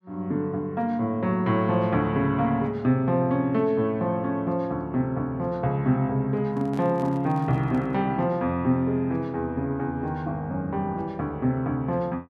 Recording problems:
microphone handling noise; from 6.5 to 8 s; peak -12 dB vs average level

